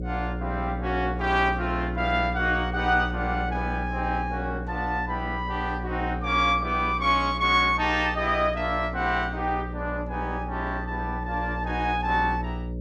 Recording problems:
electrical hum; 60 Hz, harmonics up to 600 Hz, SNR 7 dB

